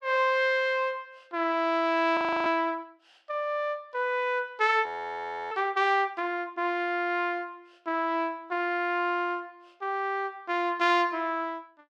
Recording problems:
audio freezing; at 2 s and at 5 s for 0.5 s

